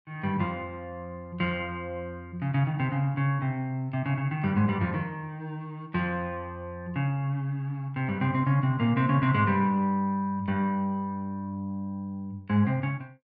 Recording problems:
none

